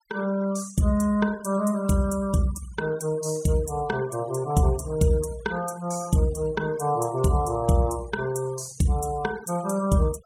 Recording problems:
noise reduction artefacts; signal-to-artefact ratio 21 dB

